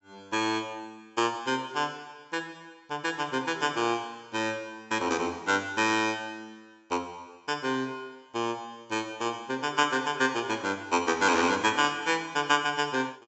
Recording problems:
treble cut off; nothing above 7.8 kHz

